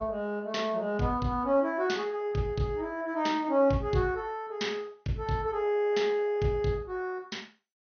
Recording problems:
lossy codec; MP2, log-spectral distance 2 dB, nothing above 6.3 kHz

